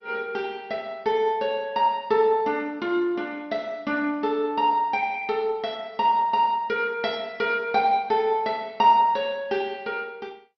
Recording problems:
lossy compression; MP2, log-spectral distance 2 dB, nothing above 5.3 kHz

